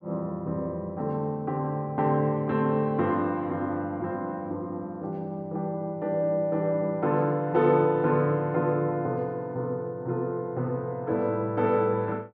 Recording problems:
none

